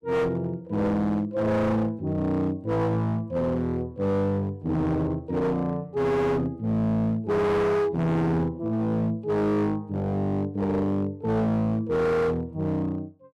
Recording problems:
distortion; hard clipping, signal-to-distortion ratio 8 dB

